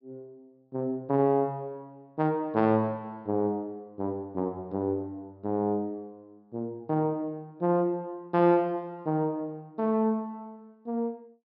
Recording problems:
low-pass filter; nothing above 5.4 kHz

